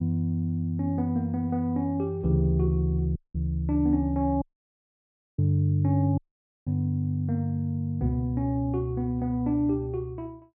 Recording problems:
dropout; at 3 s, at 4.5 s for 1 s and at 6 s

